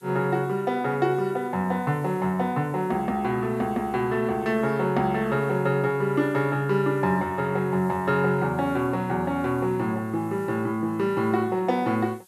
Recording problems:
background hiss; slope +1 dB per octave, SNR 30 dB

